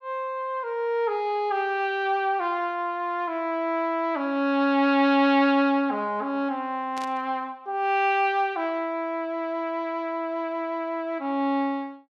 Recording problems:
static burst; at 7 s; peak -10 dB vs average level

